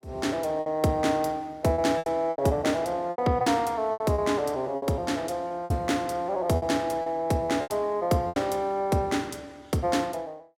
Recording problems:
packet loss; 9% of the sound replaced, filled with repeated pitch periods

